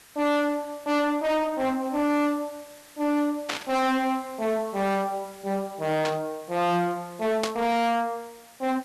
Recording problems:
distortion; hard clipping, signal-to-distortion ratio 6 dB
hiss; SNR 22 dB
static burst; at 3.5 s, at 6 s and at 7.5 s; peak +2 dB vs average level

